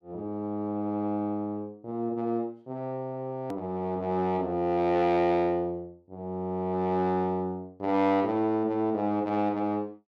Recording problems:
edit click; at 3.5 s

